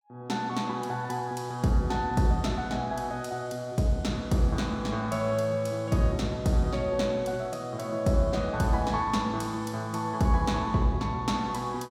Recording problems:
none

